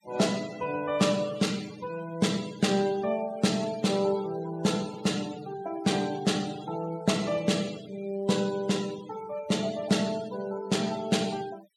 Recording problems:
denoising artefacts; signal-to-artefact ratio 17 dB

